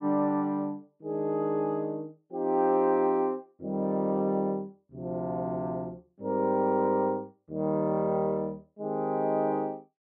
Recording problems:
none

